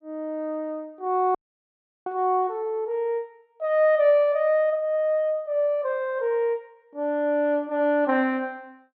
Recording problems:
audio cutting out; at 1.5 s for 0.5 s

